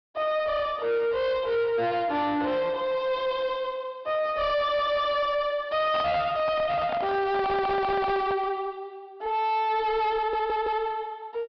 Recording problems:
treble cut off; nothing above 5.5 kHz
distorted audio; soft clipping, signal-to-distortion ratio 8 dB
audio stuttering; at 4.5 s, at 7.5 s and at 10 s
handling noise; from 6 to 8.5 s; peak 0 dB vs average level

